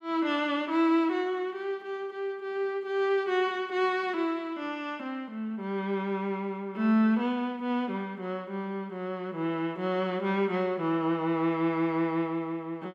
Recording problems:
none

